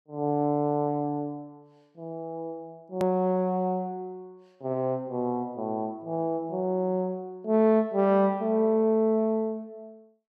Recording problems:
edit click; at 3 s

